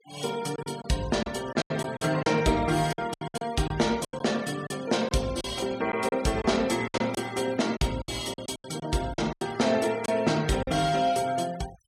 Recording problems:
noise reduction artefacts; signal-to-artefact ratio 18 dB
packet loss; 11% of the sound replaced, filled with silence

